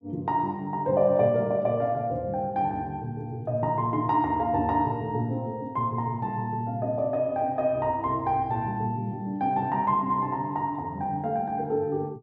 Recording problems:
none

